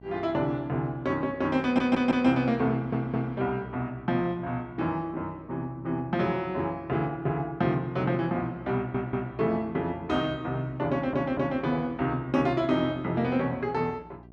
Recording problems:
hum; 60 Hz, harmonics up to 780 Hz, SNR 23 dB
stutter; 4 times, first at 1.5 s

